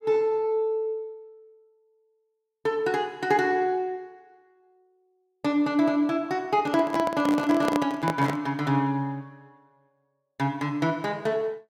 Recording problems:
handling noise; from 6.5 to 8.5 s; peak +2 dB vs average level

